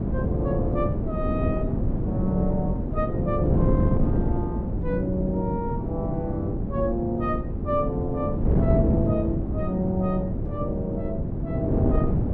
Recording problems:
wind noise; below 250 Hz, SNR -3 dB

